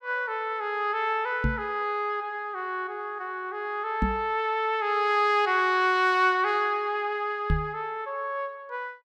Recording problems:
microphone bump; at 1.5 s, at 4 s and at 7.5 s; peak +4 dB vs average level

